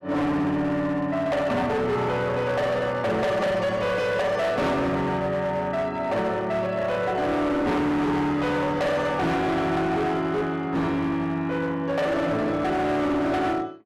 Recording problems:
distorted audio; hard clipping, signal-to-distortion ratio 8 dB

